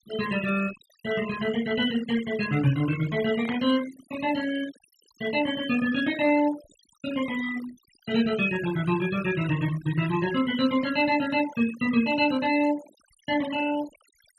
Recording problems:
denoising artefacts; signal-to-artefact ratio 14 dB
static burst; at 3.5 s; peak -9 dB vs average level

